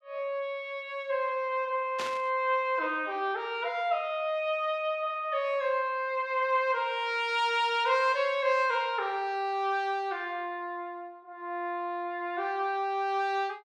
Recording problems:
burst of static; at 2 s; peak -3 dB vs average level

